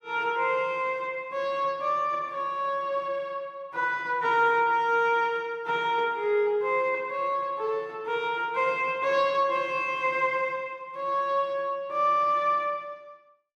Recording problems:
none

